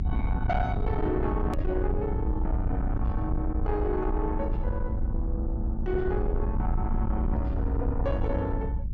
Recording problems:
low-pass filter; nothing above 7.3 kHz
distortion; soft clipping, signal-to-distortion ratio 10 dB
rumble; below 90 Hz, SNR -1 dB
click at an edit; at 1.5 s

